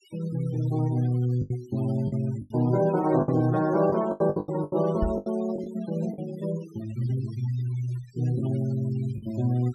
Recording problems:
noise reduction artefacts; signal-to-artefact ratio 20 dB
lost packets; 8% of the sound replaced, filled with the last packet
microphone thump; at 5 s; peak +2 dB vs average level

